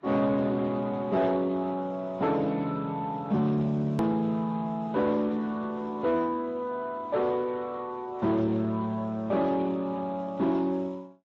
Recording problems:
codec artefacts; Speex, then AAC, log-spectral distance 2 dB, nothing above 13.1 kHz
distortion; soft clipping, signal-to-distortion ratio 11 dB
edit click; at 4 s

